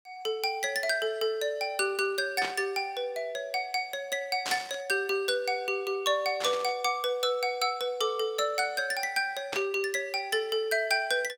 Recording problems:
burst of static; 4 times, first at 2.5 s; peak 0 dB vs average level

